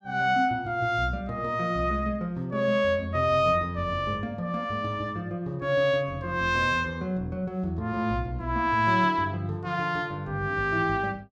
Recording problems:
none

